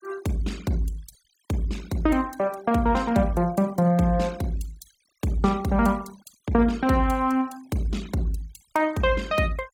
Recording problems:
denoising artefacts; signal-to-artefact ratio 22 dB

